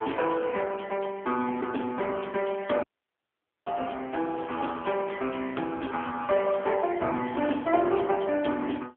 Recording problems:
phone line; 260 Hz to 3.4 kHz, AMR-NB
audio cutting out; at 3 s for 1 s

